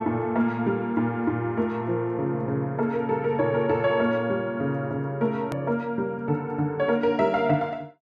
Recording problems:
click at an edit; at 5.5 s

